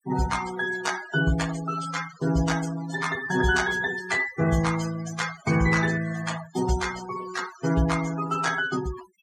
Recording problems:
noise reduction artefacts; signal-to-artefact ratio 11 dB

